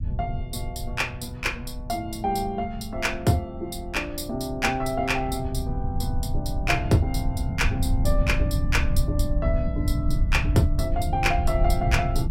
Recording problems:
low-frequency rumble; below 100 Hz, SNR 1 dB

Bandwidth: 16 kHz